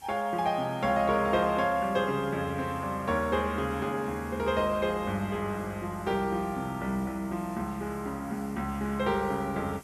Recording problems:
background hiss; SNR 23 dB

